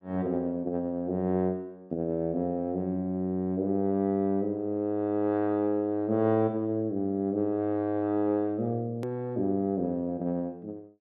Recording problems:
edit click; at 9 s

